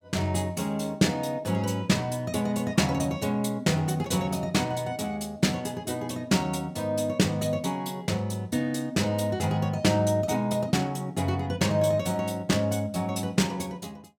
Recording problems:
none

